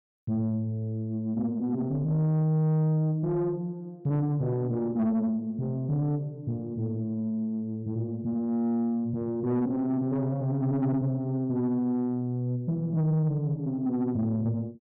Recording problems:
distorted audio; soft clipping, signal-to-distortion ratio 11 dB

